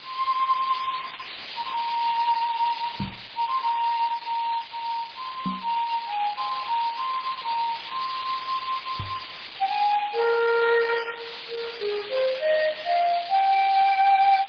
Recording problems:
lossy codec; MP3, then Opus, log-spectral distance 16 dB
background hiss; SNR 13 dB
microphone thump; at 3 s, at 5.5 s and at 9 s; peak -1 dB vs average level

